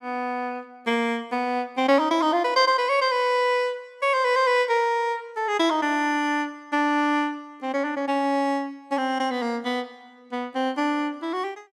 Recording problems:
none

